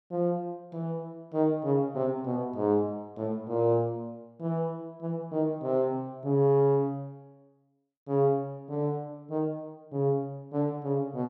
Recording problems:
none

